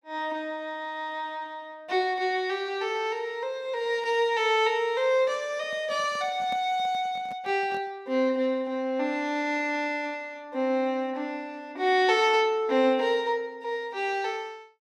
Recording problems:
handling noise; from 5.5 to 8 s; peak -11 dB vs average level

